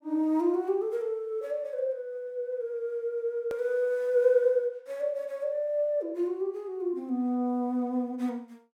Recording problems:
edit click; at 3.5 s

